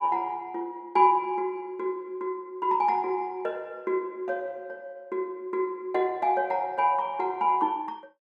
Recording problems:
none

